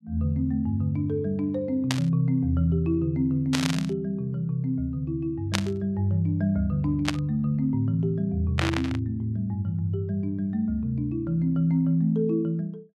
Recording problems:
burst of static; 5 times, first at 2 s; peak +5 dB vs average level

